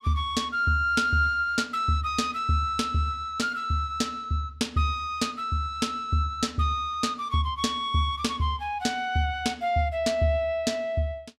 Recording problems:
none

